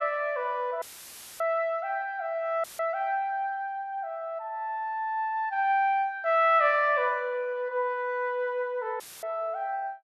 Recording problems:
audio cutting out; at 1 s for 0.5 s, at 2.5 s and at 9 s; filled with static

